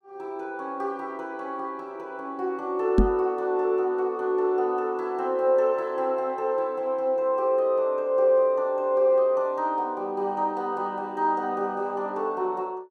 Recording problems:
microphone bump; at 3 s; peak +8 dB vs average level

